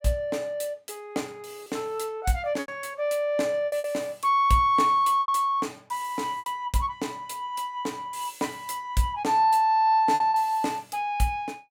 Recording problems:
lost packets; 4% of the sound replaced, filled with repeated pitch periods

